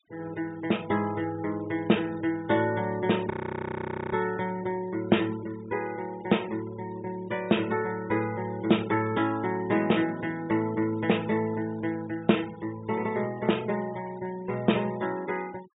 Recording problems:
treble missing; nothing above 4 kHz
noise reduction artefacts; signal-to-artefact ratio 20 dB
frozen audio; at 3.5 s for 1 s

